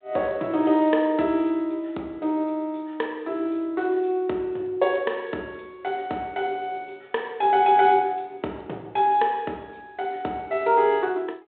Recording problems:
telephone audio; 260 Hz to 3.7 kHz, G.726

